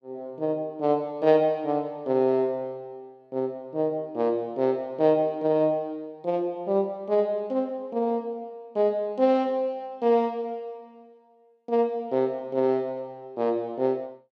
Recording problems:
none

